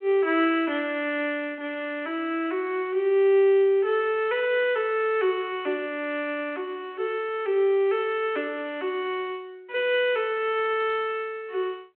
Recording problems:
phone line; 240 Hz to 3.4 kHz, G.726

